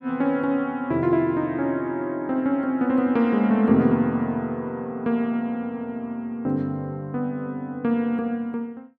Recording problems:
none

